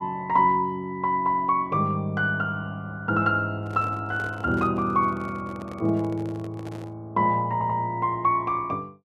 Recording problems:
handling noise; from 3.5 to 7 s; peak -11 dB vs average level
audio stuttering; at 7.5 s

